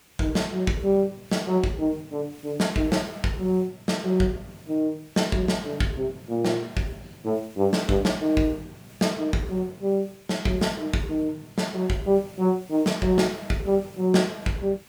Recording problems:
hiss; slope -1 dB per octave, SNR 26 dB

